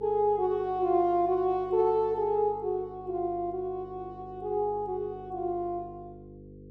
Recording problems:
electrical hum; 50 Hz, harmonics up to 500 Hz, SNR 19 dB

